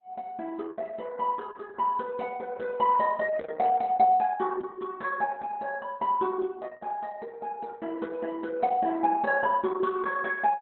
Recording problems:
codec artefacts; Opus, log-spectral distance 3 dB, nothing above 4 kHz

